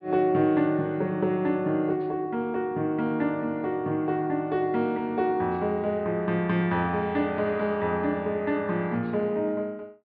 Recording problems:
treble missing; nothing above 5.5 kHz

